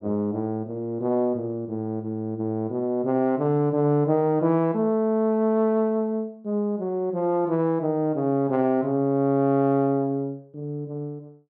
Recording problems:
none

